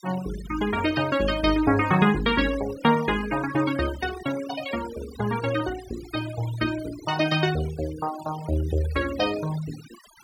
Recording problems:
noise reduction artefacts; signal-to-artefact ratio 14 dB

